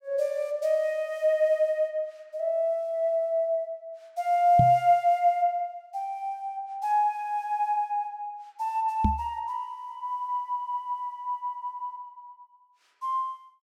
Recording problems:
microphone bump; at 4.5 s and at 9 s; peak +6 dB vs average level

